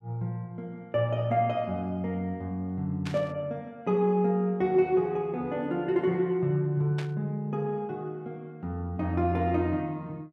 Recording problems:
static burst; at 3 s and at 7 s; peak -7 dB vs average level

